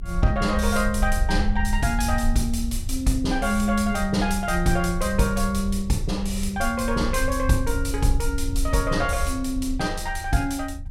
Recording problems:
low-frequency rumble; below 68 Hz, strongest tone 28 Hz, SNR 6 dB

